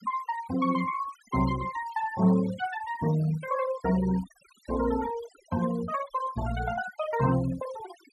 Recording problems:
denoising artefacts; signal-to-artefact ratio 16 dB

